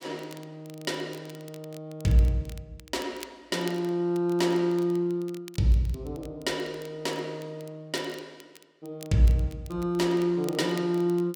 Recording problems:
crackle; vinyl, SNR 23 dB

